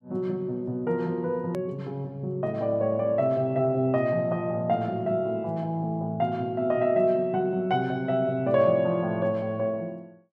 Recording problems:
click at an edit; at 1.5 s

